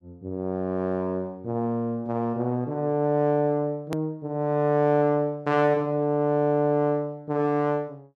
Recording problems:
edit click; at 4 s

